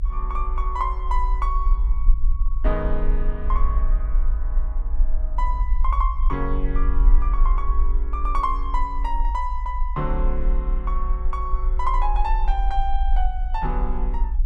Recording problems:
rumble; below 48 Hz, SNR -4 dB

